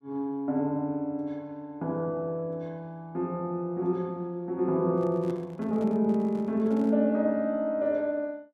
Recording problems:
handling noise; from 5 to 7 s; peak -10 dB vs average level

